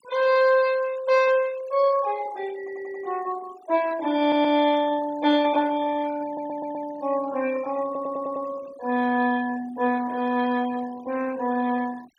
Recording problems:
denoising artefacts; signal-to-artefact ratio 20 dB
audio stuttering; 4 times, first at 2.5 s

